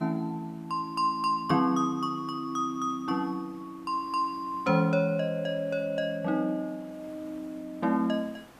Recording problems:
background hiss; slope -5 dB per octave, SNR 26 dB

